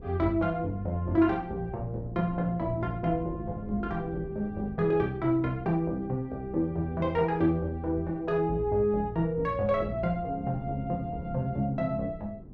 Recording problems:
wind noise; below 230 Hz, SNR 16 dB

